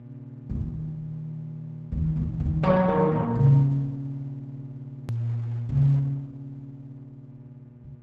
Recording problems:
codec artefacts; Opus, log-spectral distance 2 dB, nothing above 13.1 kHz
hum; 60 Hz, harmonics up to 600 Hz, SNR 20 dB
edit click; at 5 s

